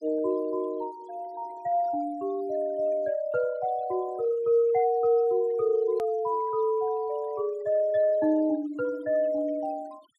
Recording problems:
denoising artefacts; signal-to-artefact ratio 26 dB
click at an edit; at 6 s

